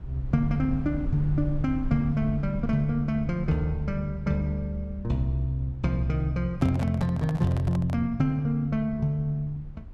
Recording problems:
rumble; below 88 Hz, SNR 12 dB
microphone handling noise; from 6.5 to 8 s; peak -6 dB vs average level

